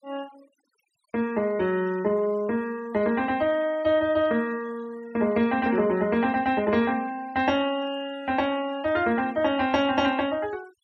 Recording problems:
denoising artefacts; signal-to-artefact ratio 22 dB

